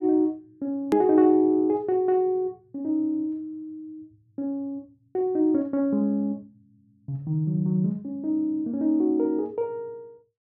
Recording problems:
hard cut with a click; at 1 s

